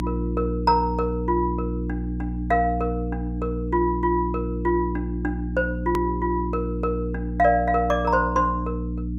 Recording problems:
mains hum; 60 Hz, harmonics up to 300 Hz, SNR 4 dB
edit click; at 6 s

